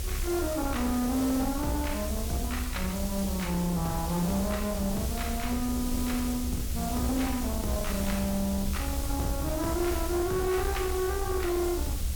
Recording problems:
distortion; soft clipping, signal-to-distortion ratio 10 dB
background hiss; SNR 8 dB
low-frequency rumble; below 82 Hz, SNR 5 dB

